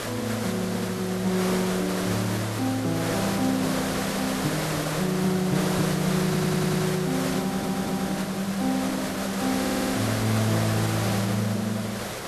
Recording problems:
background hiss; SNR 3 dB
stutter; at 6.5 s, at 7.5 s and at 9.5 s

